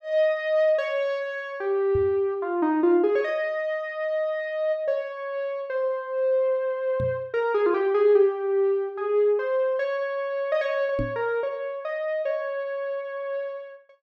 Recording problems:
microphone bump; at 2 s, at 7 s and at 11 s; peak -1 dB vs average level

